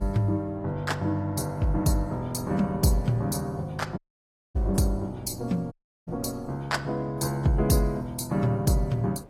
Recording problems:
lossy compression; AAC, log-spectral distance 2 dB, nothing above 14.3 kHz
wind noise; below 460 Hz, SNR 21 dB
dropout; at 4 s for 0.5 s and at 5.5 s

